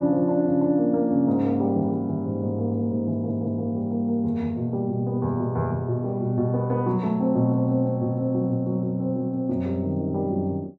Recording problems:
stutter; at 3 s

